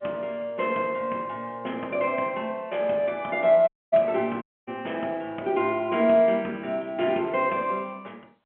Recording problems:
phone line; 190 Hz to 3.3 kHz, G.711
dropout; at 3.5 s and at 4.5 s

